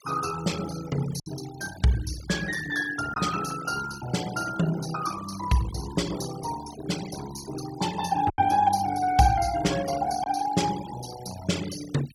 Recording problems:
noise reduction artefacts; signal-to-artefact ratio 12 dB
lost packets; 1.5% of the sound replaced, filled with silence

